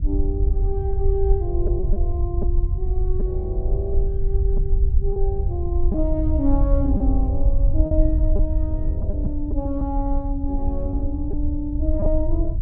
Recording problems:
low-frequency rumble; below 64 Hz, SNR -5 dB
lost packets; 4% of the sound replaced, filled with repeated pitch periods

